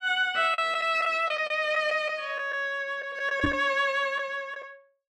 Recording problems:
lost packets; 6% of the sound replaced, filled with the last packet
microphone thump; at 3.5 s; peak +3 dB vs average level

